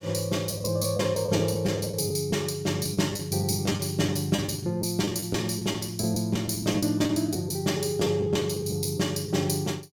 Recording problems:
packet loss; 9% of the sound replaced, filled with the last packet

